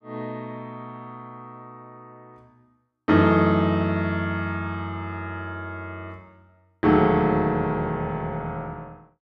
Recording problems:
none

